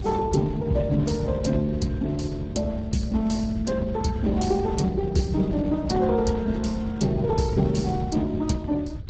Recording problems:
codec artefacts; Speex, log-spectral distance 2 dB, nothing above 7.6 kHz
low-frequency rumble; below 120 Hz, SNR 9 dB

